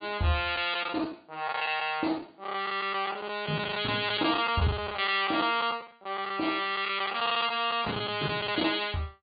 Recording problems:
treble cut off; nothing above 4.7 kHz
lost packets; 10% of the sound replaced, filled with the last packet

